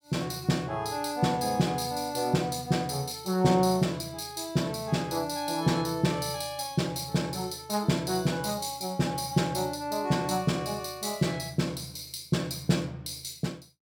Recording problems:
none

